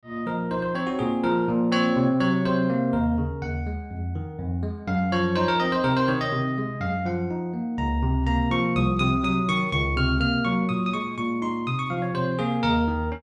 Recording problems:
none

